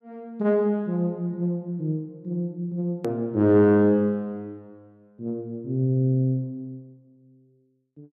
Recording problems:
edit click; at 3 s

